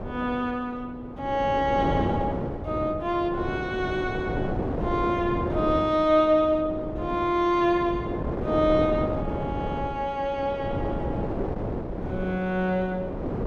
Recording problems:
wind on the microphone; below 510 Hz, SNR 5 dB

